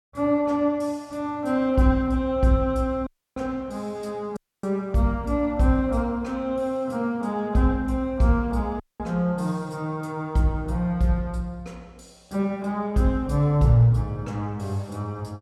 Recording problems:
dropout; at 3 s, at 4.5 s and at 9 s

